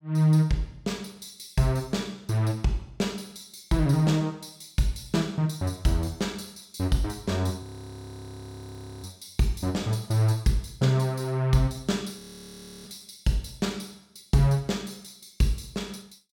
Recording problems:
frozen audio; at 7.5 s for 1.5 s and at 12 s for 0.5 s

